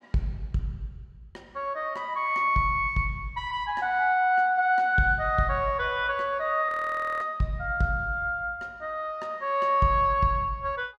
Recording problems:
audio freezing; at 6.5 s for 0.5 s

